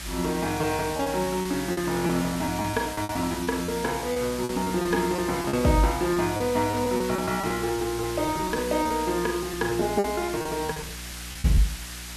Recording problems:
hum; 60 Hz, harmonics up to 360 Hz, SNR 16 dB
background hiss; slope +2 dB per octave, SNR 10 dB
packet loss; 12% of the sound replaced, filled with repeated pitch periods

